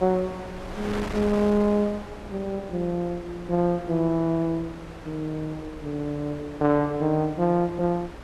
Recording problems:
electrical hum; 60 Hz, harmonics up to 600 Hz, SNR 21 dB
wind on the microphone; below 1.3 kHz, SNR 14 dB

